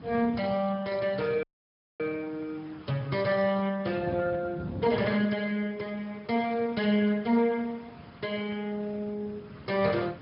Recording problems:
treble cut off; nothing above 5.2 kHz
lossy codec; Speex, log-spectral distance 4 dB
hiss; SNR 24 dB
wind on the microphone; below 270 Hz, SNR 16 dB
audio cutting out; at 1.5 s for 0.5 s

